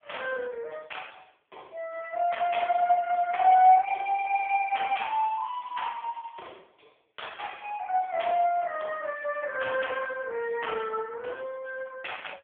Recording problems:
phone line; 280 Hz to 3.4 kHz, AMR-NB
crackle; from 4 to 6.5 s; loose cable, SNR 27 dB

